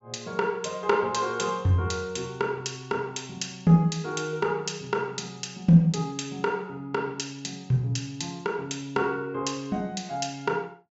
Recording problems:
treble missing; nothing above 8 kHz

